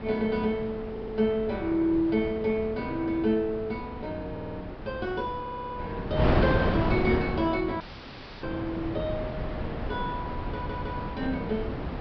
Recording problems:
treble cut off; nothing above 5.5 kHz
wind on the microphone; below 580 Hz, SNR 3 dB
audio stuttering; 4 times, first at 1 s
dropout; at 8 s for 0.5 s

